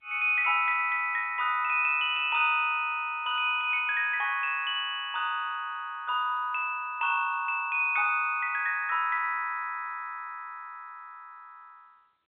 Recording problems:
telephone audio; 340 Hz to 3.6 kHz, G.711

